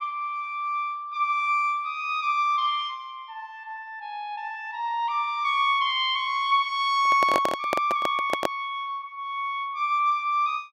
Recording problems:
microphone handling noise; from 7 to 8.5 s; peak +3 dB vs average level

